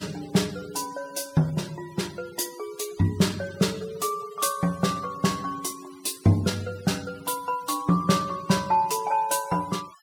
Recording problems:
denoising artefacts; signal-to-artefact ratio 20 dB

